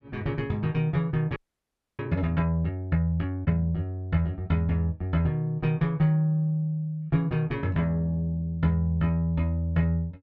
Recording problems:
frozen audio; at 1.5 s for 0.5 s

